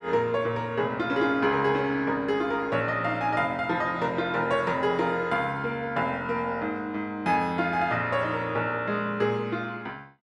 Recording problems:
none

